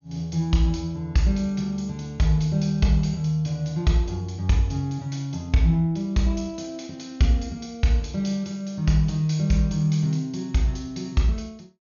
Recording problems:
low-pass filter; nothing above 6.7 kHz

